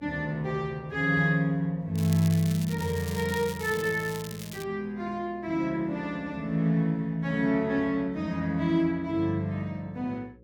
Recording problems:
electrical hum; 60 Hz, harmonics up to 540 Hz, SNR 27 dB
crackle; from 2 to 4.5 s; loose cable, SNR 14 dB

